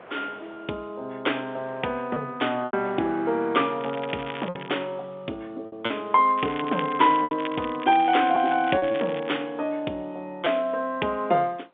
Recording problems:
phone line; 280 Hz to 3.6 kHz, G.711
wind on the microphone; below 1.4 kHz, SNR 23 dB
lost packets; 4% of the sound replaced, filled with repeated pitch periods
crackle; at 4 s and from 6.5 to 9.5 s; loose cable, SNR 15 dB

